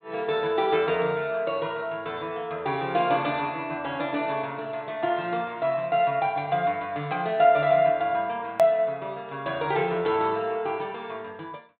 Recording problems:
treble cut off; nothing above 4 kHz
hard cut with a click; at 8.5 s

